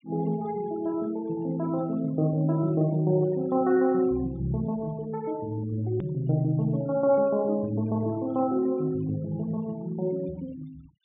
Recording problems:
treble cut off; nothing above 3.6 kHz
denoising artefacts; signal-to-artefact ratio 23 dB
hard cut with a click; at 6 s

